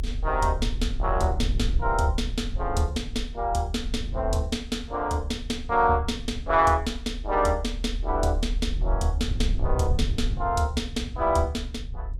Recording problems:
low-frequency rumble; below 66 Hz, strongest tone 38 Hz, SNR 5 dB

